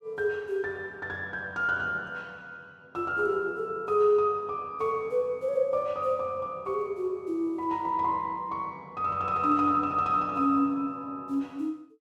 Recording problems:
none

